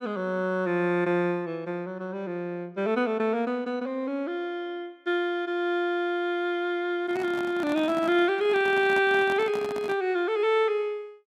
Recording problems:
microphone handling noise; from 7 to 10 s; peak -6 dB vs average level

